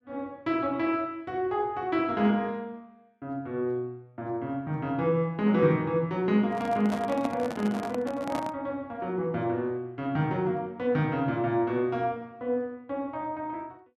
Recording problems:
microphone handling noise; from 6.5 to 8.5 s; peak -2 dB vs average level

